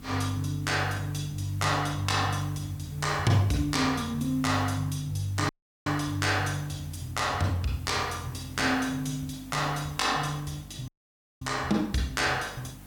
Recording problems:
hum; 50 Hz, harmonics up to 300 Hz, SNR 19 dB
hiss; SNR 24 dB
dropout; at 5.5 s and at 11 s for 0.5 s

